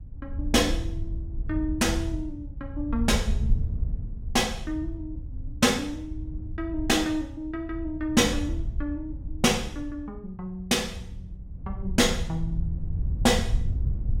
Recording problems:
wind on the microphone; below 84 Hz, SNR 6 dB

